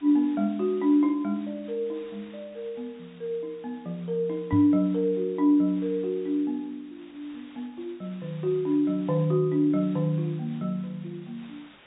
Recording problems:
treble missing; nothing above 4 kHz
hiss; SNR 27 dB
microphone thump; at 4.5 s; peak +1 dB vs average level

